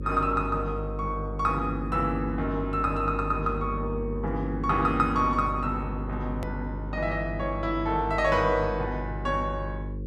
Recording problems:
hum; 50 Hz, harmonics up to 550 Hz, SNR 6 dB
click at an edit; at 6.5 s

